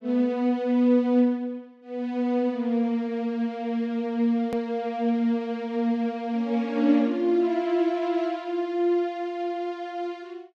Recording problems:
edit click; at 4.5 s

